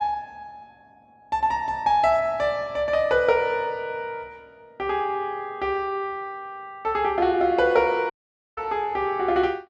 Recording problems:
dropout; at 8 s

